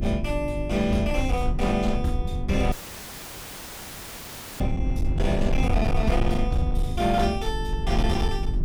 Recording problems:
distorted audio; hard clipping, signal-to-distortion ratio 11 dB
electrical hum; 50 Hz, harmonics up to 400 Hz, SNR 8 dB
low-frequency rumble; below 76 Hz, SNR 3 dB
audio cutting out; at 2.5 s for 2 s; filled with static

